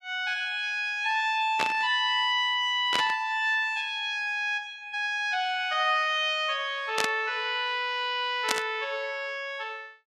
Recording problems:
static burst; 4 times, first at 1.5 s; peak +4 dB vs average level

